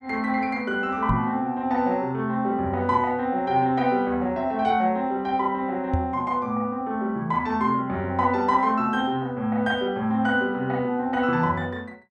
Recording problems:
microphone thump; at 1 s and at 6 s; peak +2 dB vs average level

